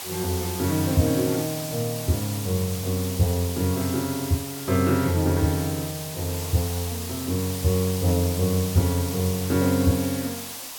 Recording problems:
background hiss; SNR 8 dB

